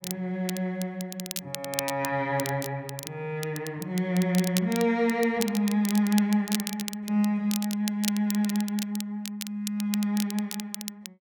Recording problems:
crackle; vinyl, SNR 9 dB

